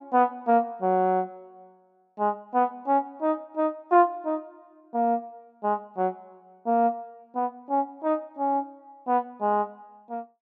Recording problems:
none

